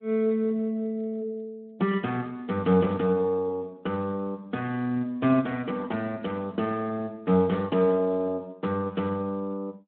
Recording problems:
telephone audio; 150 Hz to 3.7 kHz, Speex

